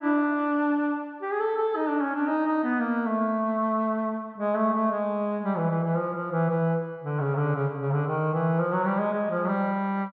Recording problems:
none

